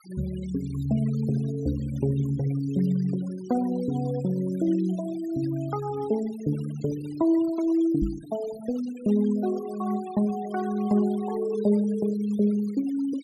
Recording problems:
denoising artefacts; signal-to-artefact ratio 22 dB
knock on the microphone; at 8 s; peak +1 dB vs average level

